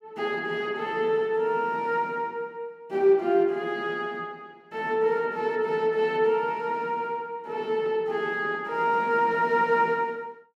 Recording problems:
none

